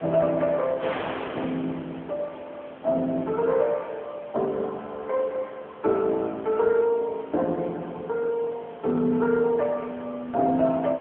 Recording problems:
phone line; 220 Hz to 2.6 kHz, AMR-NB
wind noise; below 1.7 kHz, SNR 15 dB

